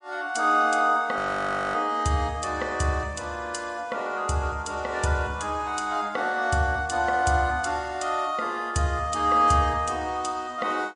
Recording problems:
lossy compression; MP3, log-spectral distance 2 dB, nothing above 10.4 kHz
audio freezing; at 1 s for 0.5 s

